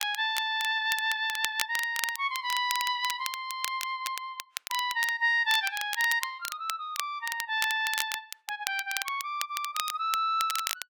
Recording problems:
crackling; vinyl, SNR 7 dB

